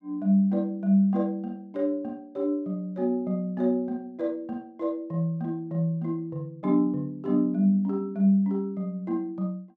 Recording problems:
none

